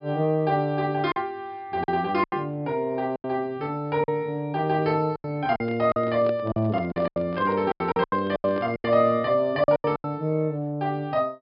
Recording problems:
treble cut off; nothing above 5.5 kHz
lost packets; 10% of the sound replaced, filled with silence
handling noise; from 5.5 to 9 s; peak -5 dB vs average level

